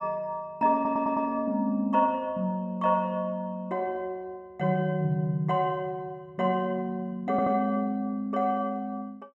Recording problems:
stutter; at 1 s and at 7.5 s

